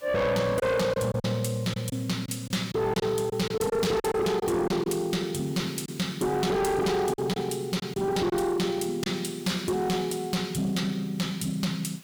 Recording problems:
distorted audio; soft clipping, signal-to-distortion ratio 8 dB
hiss; slope 0 dB per octave, SNR 23 dB
lost packets; 5% of the sound replaced, filled with silence

